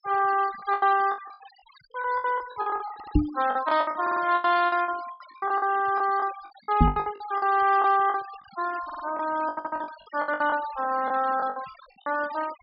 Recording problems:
low-pass filter; nothing above 5.1 kHz
noise reduction artefacts; signal-to-artefact ratio 18 dB
lost packets; 18% of the sound replaced, filled with the last packet
audio stuttering; 4 times, first at 3 s
microphone thump; at 3 s and at 7 s; peak +9 dB vs average level

